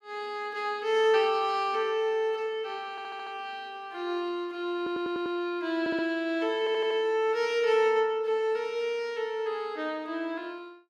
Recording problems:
audio stuttering; 4 times, first at 3 s

